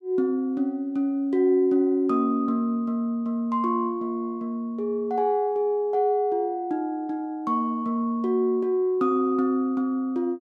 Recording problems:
none

